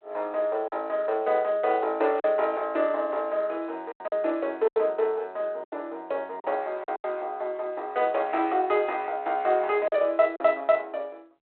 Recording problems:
telephone audio; 340 Hz to 4 kHz, G.726
packet loss; 5% of the sound replaced, filled with silence

